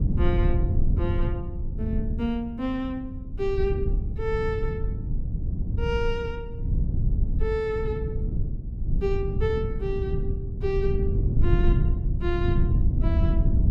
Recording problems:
low-frequency rumble; below 110 Hz, SNR -3 dB

